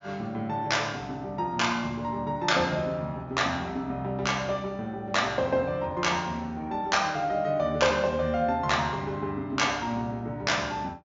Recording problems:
treble cut off; nothing above 7.2 kHz

